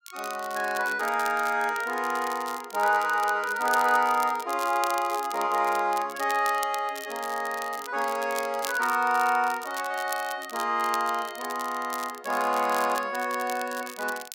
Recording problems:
crackling; vinyl, SNR 14 dB

